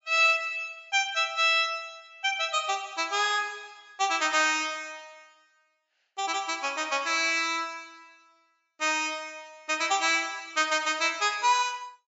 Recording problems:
low-pass filter; nothing above 8 kHz

